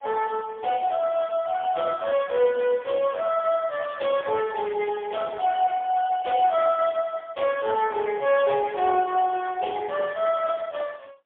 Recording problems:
phone line; 280 Hz to 3.3 kHz, AMR-NB, then MP3

